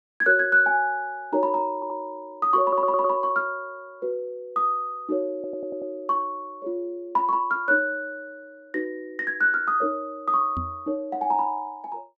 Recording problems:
audio stuttering; at 2 s, at 2.5 s and at 5.5 s
microphone thump; at 11 s; peak -4 dB vs average level

